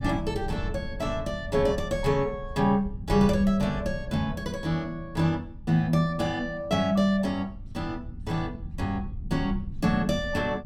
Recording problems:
rumble; below 110 Hz, SNR 12 dB

